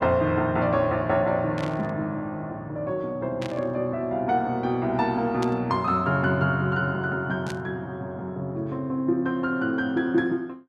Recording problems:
static burst; 4 times, first at 1.5 s; peak -7 dB vs average level

